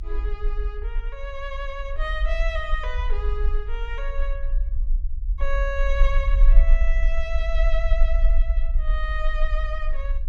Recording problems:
low-frequency rumble; below 42 Hz, strongest tone 24 Hz, SNR -7 dB

